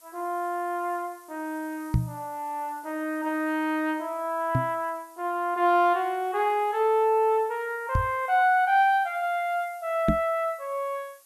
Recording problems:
hiss; SNR 27 dB
microphone bump; 4 times, first at 2 s; peak +6 dB vs average level

